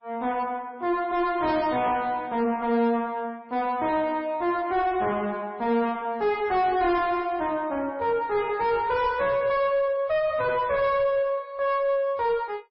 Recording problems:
lossy codec; MP3, log-spectral distance 2 dB, nothing above 4.9 kHz
distortion; soft clipping, signal-to-distortion ratio 7 dB

